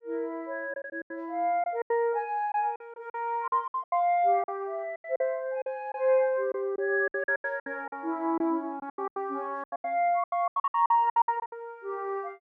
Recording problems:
lost packets; 16% of the sound replaced, filled with silence

